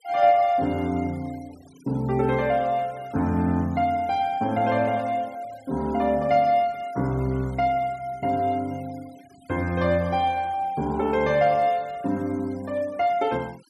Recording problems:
noise reduction artefacts; signal-to-artefact ratio 26 dB

